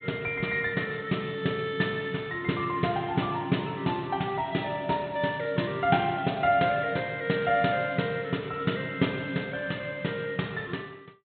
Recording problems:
treble missing; nothing above 4 kHz

